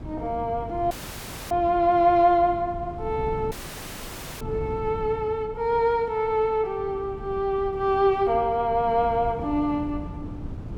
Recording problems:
wind on the microphone; below 230 Hz, SNR 14 dB
audio cutting out; at 1 s for 0.5 s and at 3.5 s for 1 s

